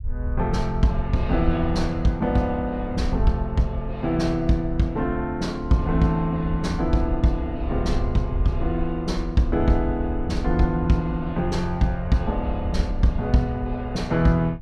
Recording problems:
low-frequency rumble; below 70 Hz, SNR 7 dB

